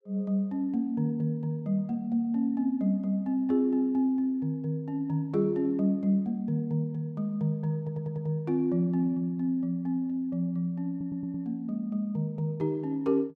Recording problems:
audio stuttering; at 8 s and at 11 s

